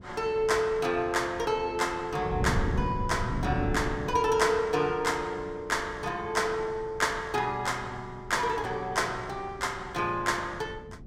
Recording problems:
wind on the microphone; below 210 Hz, SNR 10 dB

